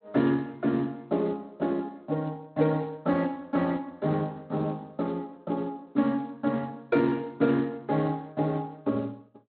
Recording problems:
codec artefacts; Speex, log-spectral distance 2 dB

